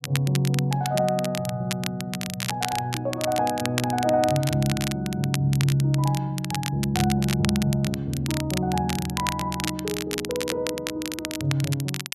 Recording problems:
crackling; vinyl, SNR 7 dB

